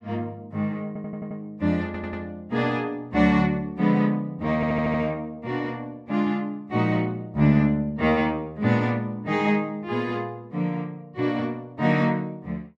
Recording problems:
audio stuttering; at 1 s, at 2 s and at 4.5 s

